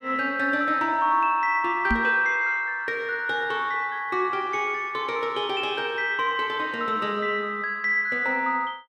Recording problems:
microphone bump; at 2 s; peak +1 dB vs average level

